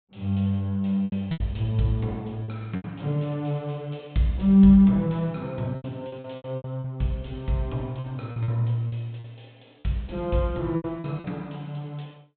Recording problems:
treble missing; nothing above 4 kHz
lost packets; 8% of the sound replaced, filled with repeated pitch periods

